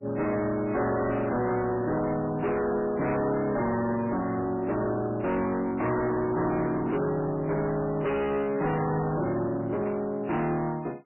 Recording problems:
codec artefacts; MP3, log-spectral distance 3 dB, nothing above 2.6 kHz
distortion; soft clipping, signal-to-distortion ratio 7 dB

